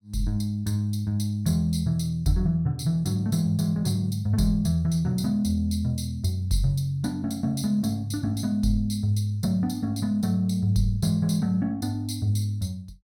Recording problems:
none

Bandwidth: 16.5 kHz